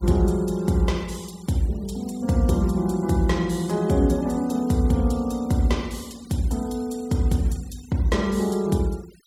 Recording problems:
noise reduction artefacts; signal-to-artefact ratio 24 dB

